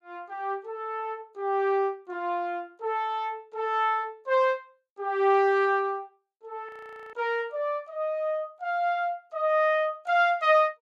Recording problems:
frozen audio; at 6.5 s

